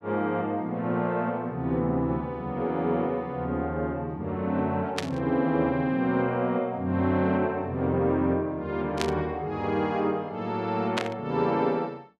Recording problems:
burst of static; at 5 s, at 9 s and at 11 s; peak +3 dB vs average level

